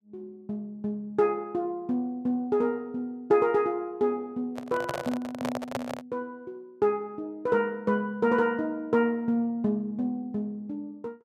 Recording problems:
microphone handling noise; from 4.5 to 6 s; peak +1 dB vs average level

